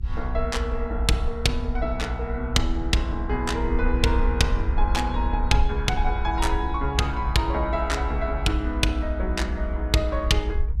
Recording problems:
low-frequency rumble; below 64 Hz, SNR 2 dB

